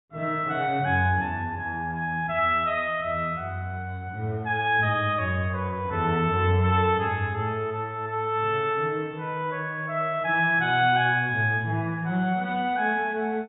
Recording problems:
low-pass filter; nothing above 4 kHz

